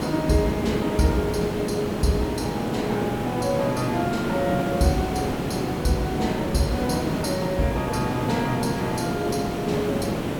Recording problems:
background hiss; slope -8 dB per octave, SNR 1 dB

